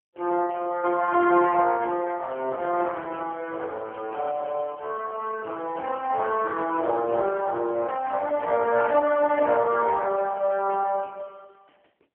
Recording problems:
telephone audio; 300 Hz to 3.1 kHz, AMR-NB

